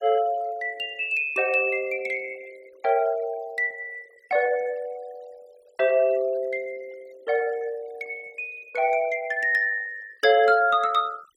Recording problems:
noise reduction artefacts; signal-to-artefact ratio 25 dB

